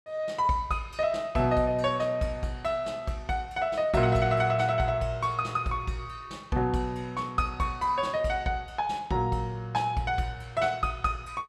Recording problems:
none

